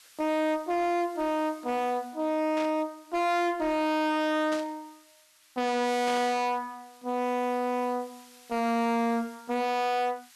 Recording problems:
distortion; hard clipping, signal-to-distortion ratio 6 dB
hiss; SNR 26 dB
static burst; at 2.5 s, at 4.5 s and at 6 s; peak -7 dB vs average level

